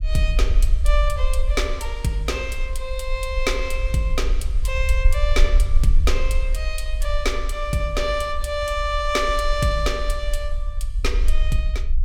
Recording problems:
low-frequency rumble; below 48 Hz, strongest tone 20 Hz, SNR 0 dB

